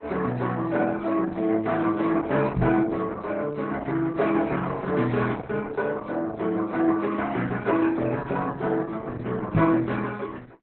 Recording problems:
lossy codec; Vorbis, then Opus, log-spectral distance 3 dB, nothing above 4 kHz
microphone thump; at 2.5 s and at 9.5 s; peak +8 dB vs average level

